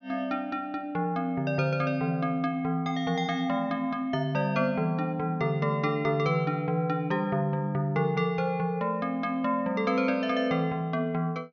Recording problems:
treble missing; nothing above 6.6 kHz

